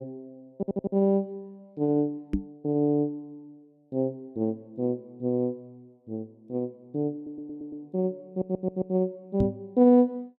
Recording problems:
audio stuttering; at 0.5 s, at 7 s and at 8.5 s
microphone bump; at 2.5 s and at 9.5 s; peak +4 dB vs average level

